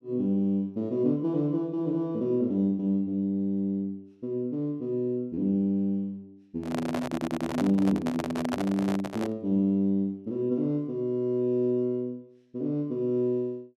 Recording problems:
handling noise; from 6.5 to 9.5 s; peak 0 dB vs average level
stutter; at 7 s

